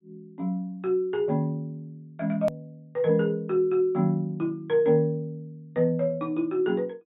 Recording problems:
treble missing; nothing above 4 kHz
edit click; at 2.5 s

